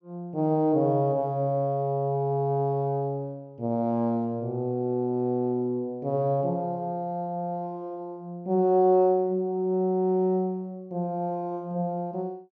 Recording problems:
treble missing; nothing above 6.5 kHz

